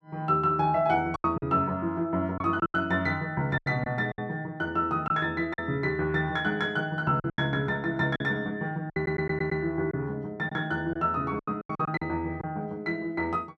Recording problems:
lost packets; 8% of the sound replaced, filled with silence
audio stuttering; at 9 s

